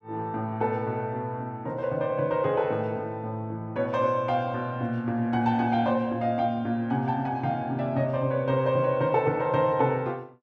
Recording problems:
none

